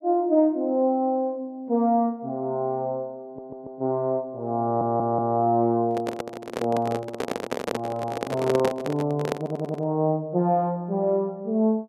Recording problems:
stutter; at 3.5 s, at 4.5 s and at 9.5 s
microphone handling noise; from 6 to 10 s; peak +2 dB vs average level

